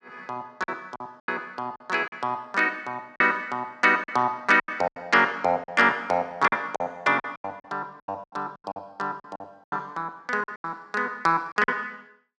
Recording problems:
lost packets; 12% of the sound replaced, filled with silence

